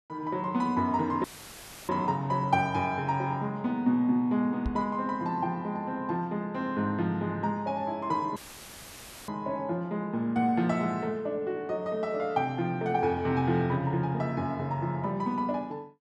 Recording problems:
dropout; at 1 s for 0.5 s and at 8.5 s for 1 s; filled with static
knock on the microphone; at 4.5 s; peak 0 dB vs average level

